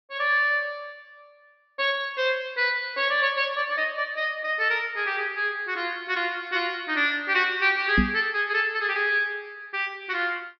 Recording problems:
low-pass filter; nothing above 5.5 kHz
microphone thump; at 8 s; peak +6 dB vs average level

